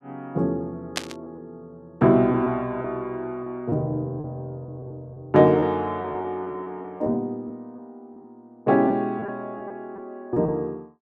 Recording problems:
lost packets; 7% of the sound replaced, filled with repeated pitch periods
burst of static; at 1 s; peak +3 dB vs average level

